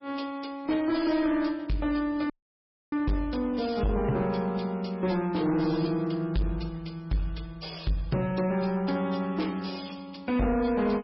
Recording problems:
lossy codec; MP3, log-spectral distance 3 dB, nothing above 4.9 kHz
distortion; soft clipping, signal-to-distortion ratio 10 dB
dropout; at 2.5 s for 0.5 s

